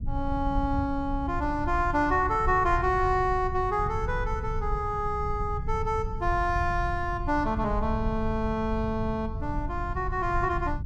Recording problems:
rumble; below 96 Hz, SNR 6 dB

